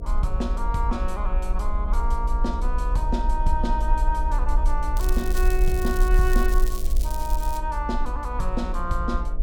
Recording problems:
hum; 60 Hz, harmonics up to 720 Hz, SNR 8 dB
low-frequency rumble; below 46 Hz, SNR -2 dB
crackling; from 5 to 7.5 s; loose cable, SNR 10 dB

